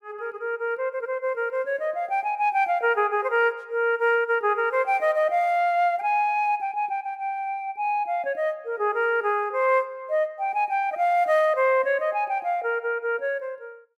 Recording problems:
none

